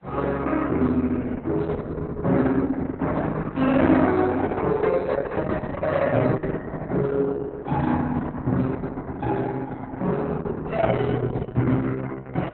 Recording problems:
lossy codec; AAC, then Opus, log-spectral distance 3 dB, nothing above 4.1 kHz

